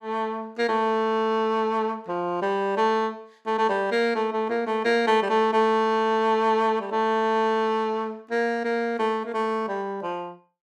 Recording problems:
none

